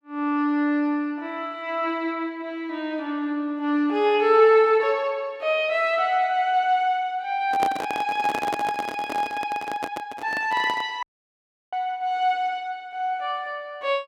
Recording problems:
microphone handling noise; from 7.5 to 11 s; peak 0 dB vs average level
dropout; at 11 s for 0.5 s

